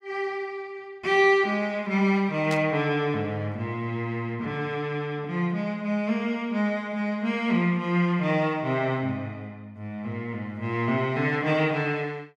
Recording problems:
static burst; at 2.5 s; peak -6 dB vs average level

